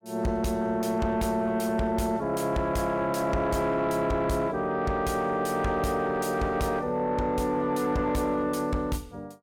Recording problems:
distorted audio; soft clipping, signal-to-distortion ratio 11 dB

